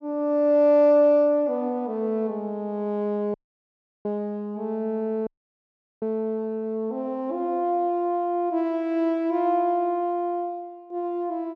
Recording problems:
dropout; at 3.5 s for 0.5 s and at 5.5 s for 1 s

